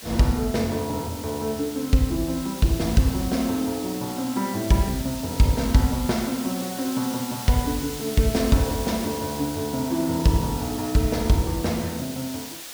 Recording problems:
background hiss; slope 0 dB per octave, SNR 11 dB

